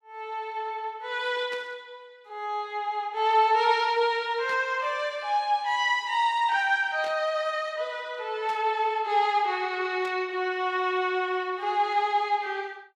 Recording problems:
static burst; 5 times, first at 1.5 s; peak -12 dB vs average level

